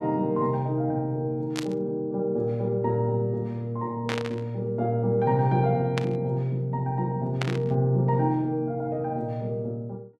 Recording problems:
static burst; 4 times, first at 1.5 s; peak 0 dB vs average level

